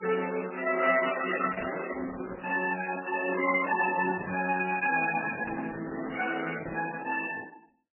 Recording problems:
codec artefacts; Opus, then MP3, log-spectral distance 6 dB, nothing above 2.7 kHz

